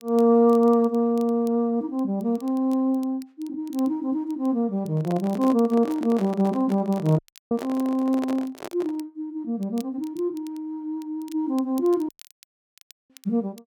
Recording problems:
crackle; vinyl, SNR 28 dB
microphone handling noise; from 5 to 9 s; peak -5 dB vs average level
audio cutting out; at 7 s and at 12 s for 1 s

